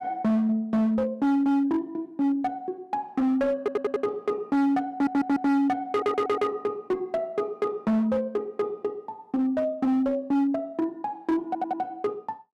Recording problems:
distortion; hard clipping, signal-to-distortion ratio 8 dB
audio stuttering; 4 times, first at 3.5 s

